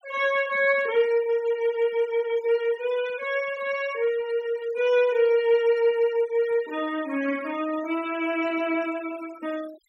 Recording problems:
denoising artefacts; signal-to-artefact ratio 19 dB

